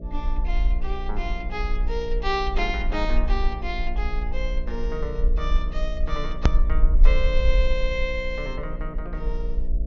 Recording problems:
low-pass filter; nothing above 6.9 kHz
hum; 60 Hz, harmonics up to 660 Hz, SNR 9 dB
low-frequency rumble; below 46 Hz, SNR -3 dB
hard cut with a click; at 6.5 s

